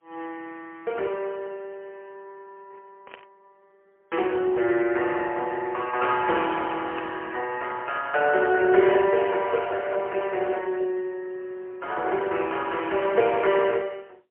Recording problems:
telephone audio; 320 Hz to 3.2 kHz, AMR-NB, then MP3
static burst; at 3 s and at 7 s; peak -12 dB vs average level

